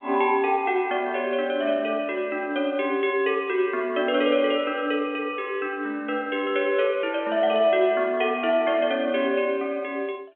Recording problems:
phone line; 240 Hz to 3.3 kHz, G.711

